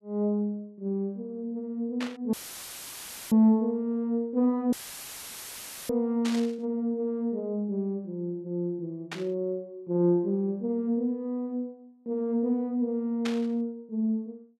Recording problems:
static burst; 4 times, first at 2 s; peak -2 dB vs average level
audio cutting out; at 2.5 s for 1 s and at 4.5 s for 1 s; filled with static

